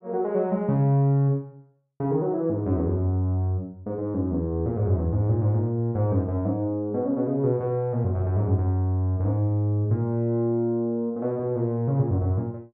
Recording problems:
none

